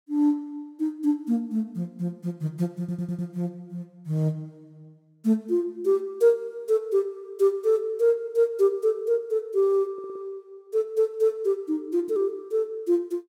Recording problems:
audio stuttering; at 3 s and at 10 s

